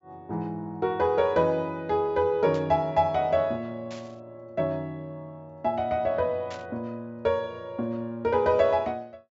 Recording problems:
treble missing; nothing above 8 kHz
static burst; at 2.5 s, at 4 s and at 6.5 s; peak -12 dB vs average level

